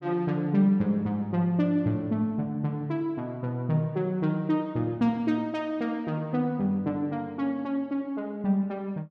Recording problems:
none

